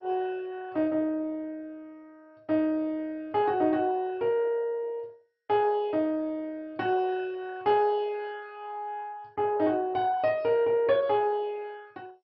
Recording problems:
codec artefacts; MP2, log-spectral distance 2 dB, nothing above 4.5 kHz

